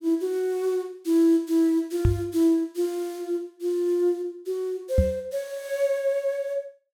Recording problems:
microphone bump; at 2 s and at 5 s; peak +8 dB vs average level

